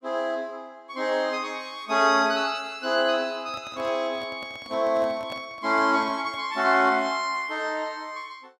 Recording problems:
handling noise; from 3.5 to 6.5 s; peak -10 dB vs average level

